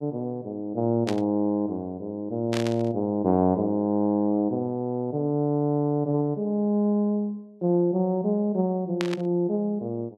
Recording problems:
burst of static; at 1 s, at 2.5 s and at 9 s; peak -2 dB vs average level

